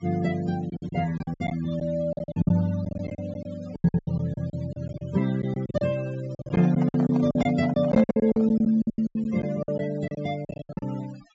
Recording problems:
low-pass filter; nothing above 8 kHz
denoising artefacts; signal-to-artefact ratio 20 dB
packet loss; 19% of the sound replaced, filled with silence
microphone handling noise; from 6.5 to 8.5 s; peak -3 dB vs average level

